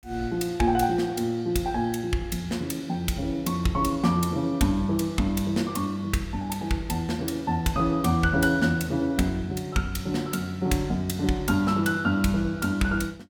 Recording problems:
none

